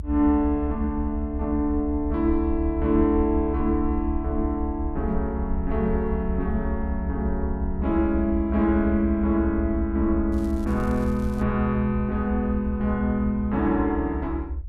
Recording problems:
rumble; below 72 Hz, SNR 6 dB
crackling; from 10 to 11 s; loose cable, SNR 27 dB

